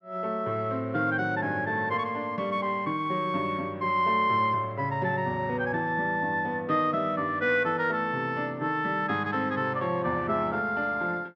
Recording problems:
none

